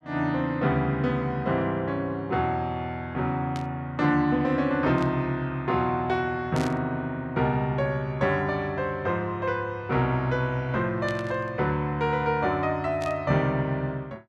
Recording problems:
burst of static; 5 times, first at 3.5 s; peak -9 dB vs average level

